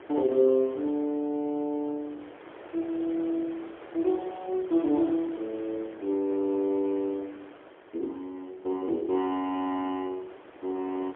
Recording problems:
telephone audio; 280 Hz to 4 kHz, AMR-NB, then MP3
wind on the microphone; below 1.3 kHz, SNR 17 dB

